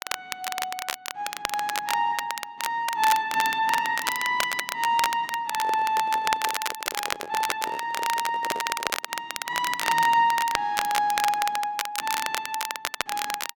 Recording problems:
crackling; vinyl, SNR 5 dB
handling noise; from 5.5 to 9 s; peak -3 dB vs average level

